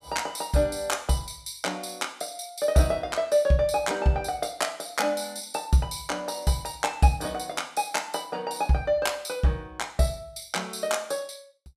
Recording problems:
none

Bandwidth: 15 kHz